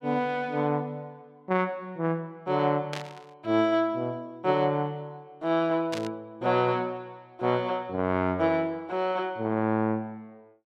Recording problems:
static burst; at 3 s and at 6 s; peak -4 dB vs average level

